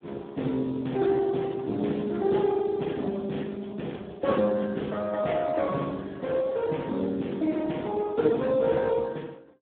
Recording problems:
telephone audio; 150 Hz to 2.1 kHz, Speex

